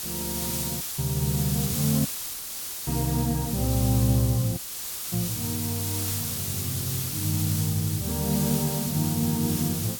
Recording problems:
hiss; slope +1 dB per octave, SNR 2 dB
audio cutting out; at 1 s, at 2 s for 1 s and at 4.5 s for 0.5 s

